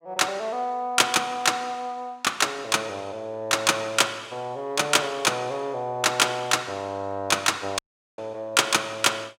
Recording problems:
audio cutting out; at 8 s

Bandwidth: 16.5 kHz